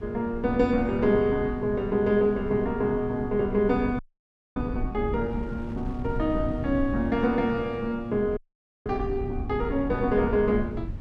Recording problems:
rumble; below 110 Hz, SNR 11 dB
wind on the microphone; below 320 Hz, SNR 19 dB
audio freezing; at 4 s for 0.5 s and at 8.5 s

